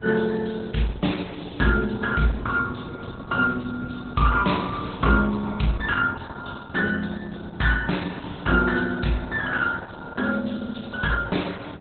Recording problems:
lossy codec; Opus, log-spectral distance 6 dB, nothing above 4 kHz
wind noise; below 330 Hz, SNR 17 dB

